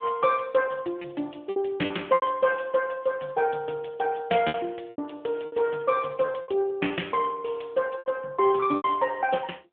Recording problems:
phone line; 220 Hz to 3.3 kHz, AMR-NB
packet loss; 8% of the sound replaced, filled with repeated pitch periods
crackle; at 5.5 s; loose cable, SNR 29 dB

